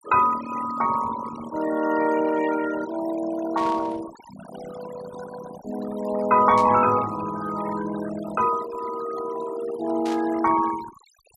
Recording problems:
denoising artefacts; signal-to-artefact ratio 14 dB
static burst; at 3.5 s, at 6.5 s and at 10 s; peak -10 dB vs average level

